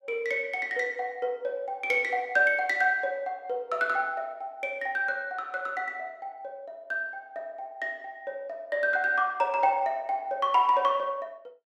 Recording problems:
none

